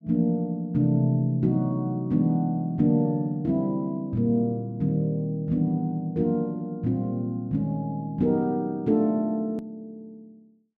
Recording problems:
hard cut with a click; at 9.5 s

